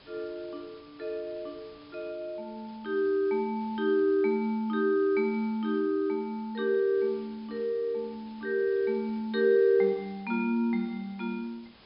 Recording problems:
treble missing; nothing above 5.5 kHz
hiss; slope -2 dB per octave, SNR 27 dB

